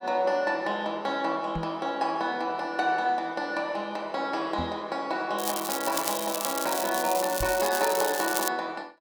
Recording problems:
microphone thump; at 1.5 s, at 4.5 s and at 7.5 s; peak -2 dB vs average level
crackle; from 5.5 to 8.5 s; loose cable, SNR 3 dB

